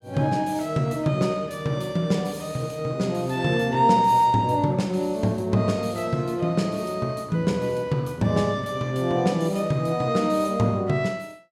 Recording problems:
none

